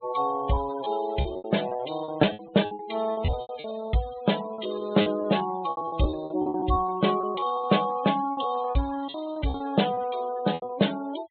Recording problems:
low-pass filter; nothing above 4 kHz
noise reduction artefacts; signal-to-artefact ratio 14 dB
packet loss; 16% of the sound replaced, filled with repeated pitch periods

